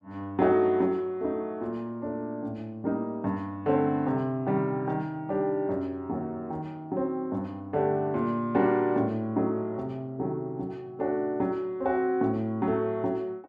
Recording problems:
none

